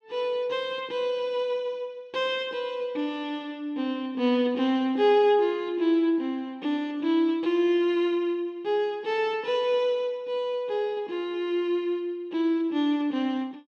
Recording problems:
none

